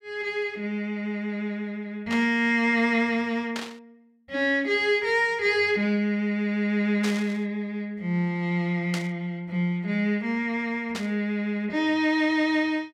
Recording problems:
static burst; 5 times, first at 2 s; peak -3 dB vs average level

